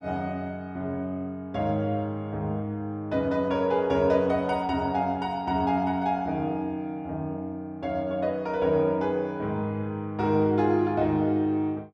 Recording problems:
none

